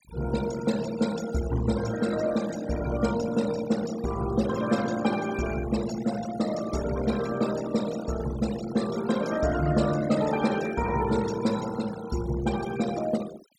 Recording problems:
denoising artefacts; signal-to-artefact ratio 13 dB

